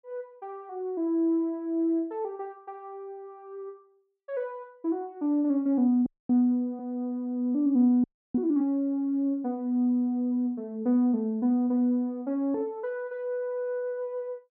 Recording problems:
audio freezing; at 6 s and at 8 s

